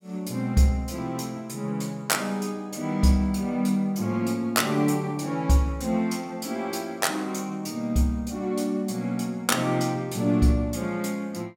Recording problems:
none

